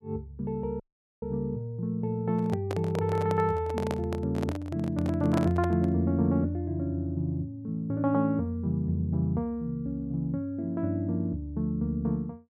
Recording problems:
audio cutting out; at 1 s
microphone handling noise; from 2.5 to 6 s; peak +1 dB vs average level

